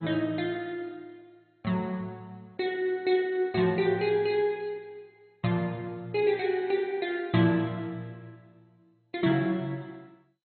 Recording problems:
lossy codec; MP2, log-spectral distance 2 dB, nothing above 4.1 kHz

